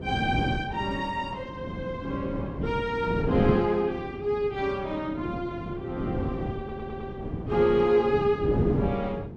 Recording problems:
wind on the microphone; below 330 Hz, SNR 4 dB
audio stuttering; at 6.5 s

